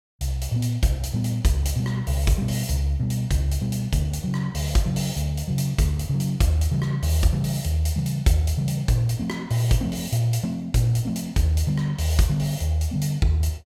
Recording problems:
none

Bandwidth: 16.5 kHz